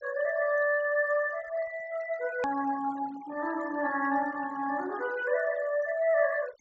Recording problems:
low-pass filter; nothing above 7.9 kHz
noise reduction artefacts; signal-to-artefact ratio 18 dB
edit click; at 2.5 s

